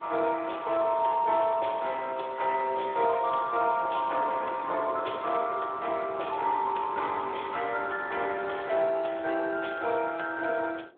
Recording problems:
phone line; 340 Hz to 3.6 kHz, Speex
wind noise; below 540 Hz, SNR 19 dB

